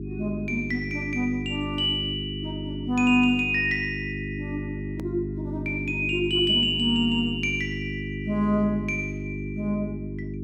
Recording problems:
electrical hum; 50 Hz, harmonics up to 400 Hz, SNR 7 dB
edit click; at 5 s

